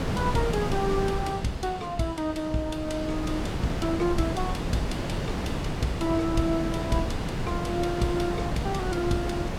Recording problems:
wind noise; below 490 Hz, SNR 2 dB

